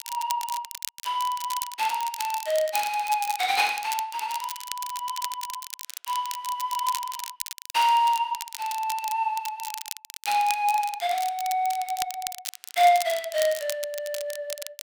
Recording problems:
crackling; vinyl, SNR 9 dB

